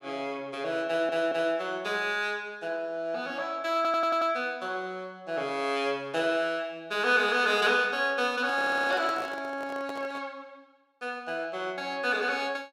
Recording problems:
audio stuttering; at 1 s, at 4 s and at 8.5 s
handling noise; from 8.5 to 10 s; peak -5 dB vs average level

